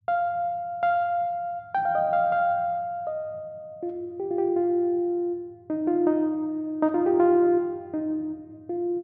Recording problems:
none

